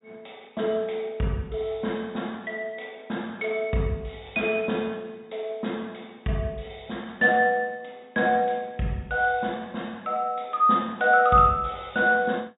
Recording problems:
low-pass filter; nothing above 4 kHz

